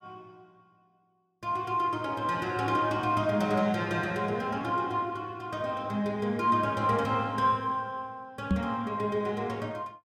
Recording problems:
microphone thump; at 8.5 s; peak +6 dB vs average level

